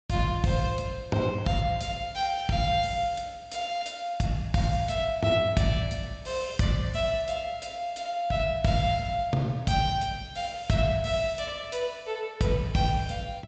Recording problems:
low-pass filter; nothing above 8 kHz

